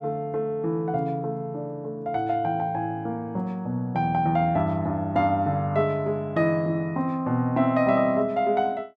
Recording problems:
none

